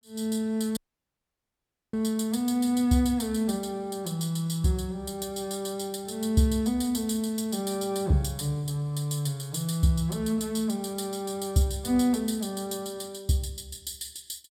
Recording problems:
dropout; at 1 s for 1 s

